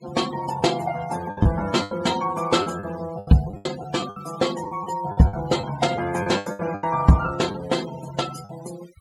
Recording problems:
noise reduction artefacts; signal-to-artefact ratio 16 dB
packet loss; 11% of the sound replaced, filled with the last packet

